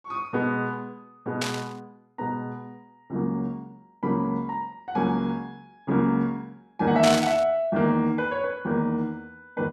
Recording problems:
burst of static; at 1.5 s and at 7 s; peak +3 dB vs average level

